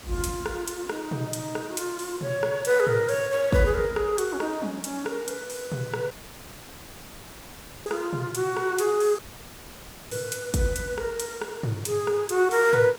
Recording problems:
background hiss; slope -3 dB per octave, SNR 18 dB
dropout; at 6 s for 2 s and at 9 s for 1 s

